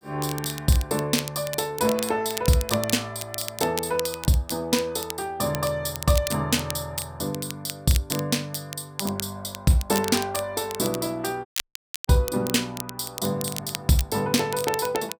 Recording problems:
crackle; vinyl, SNR 9 dB
audio cutting out; at 11 s for 0.5 s

